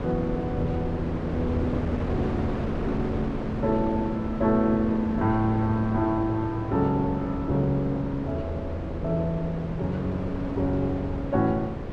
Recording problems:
wind on the microphone; below 480 Hz, SNR 5 dB

